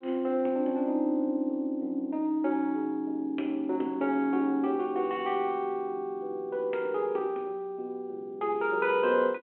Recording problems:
phone line; 220 Hz to 3.4 kHz, G.726

